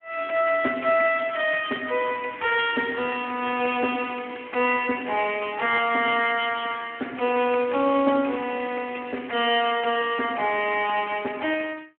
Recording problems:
telephone audio; 220 Hz to 3.1 kHz, Speex

